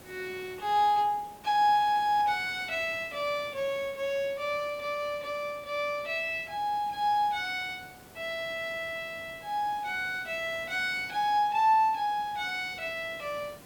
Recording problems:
background hiss; slope -5 dB per octave, SNR 22 dB

